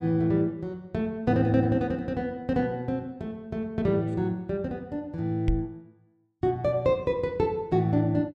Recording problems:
knock on the microphone; at 5.5 s; peak +4 dB vs average level

